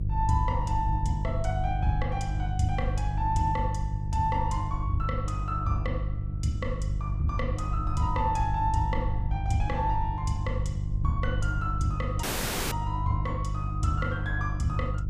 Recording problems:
mains hum; 50 Hz, harmonics up to 350 Hz, SNR 1 dB
low-frequency rumble; below 82 Hz, SNR 6 dB
audio cutting out; at 12 s

